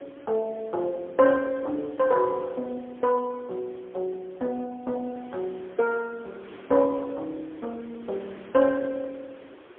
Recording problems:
telephone audio; 240 Hz to 2.8 kHz, AMR-NB, then MP3
wind noise; below 1.6 kHz, SNR 22 dB

